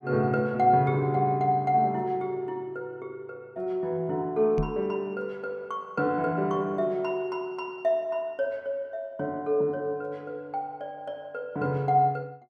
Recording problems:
microphone bump; at 4.5 s; peak +2 dB vs average level

